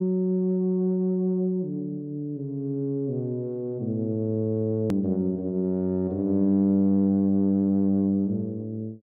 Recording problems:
hard cut with a click; at 5 s

